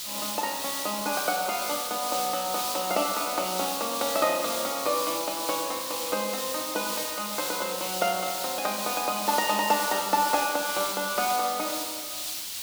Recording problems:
hiss; slope +4 dB per octave, SNR 2 dB

